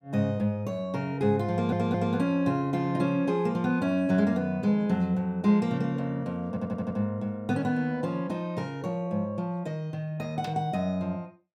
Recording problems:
stutter; at 1.5 s and at 6.5 s

